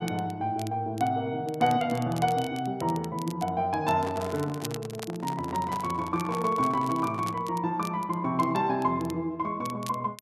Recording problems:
crackling; vinyl, SNR 18 dB
handling noise; from 4 to 7.5 s; peak -5 dB vs average level

